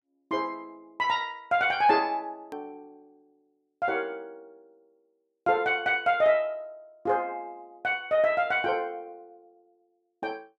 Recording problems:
edit click; at 2.5 s

